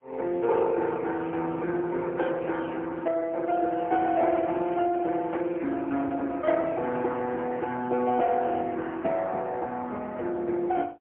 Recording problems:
phone line; 190 Hz to 3.2 kHz, AMR-NB, then MP3

